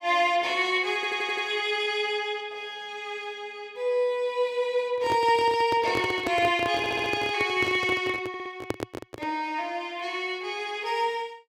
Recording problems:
audio stuttering; at 1 s, at 7 s and at 8.5 s
handling noise; from 5 to 9.5 s; peak +1 dB vs average level

